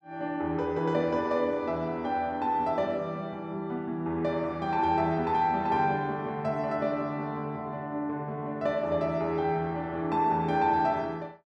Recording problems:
none

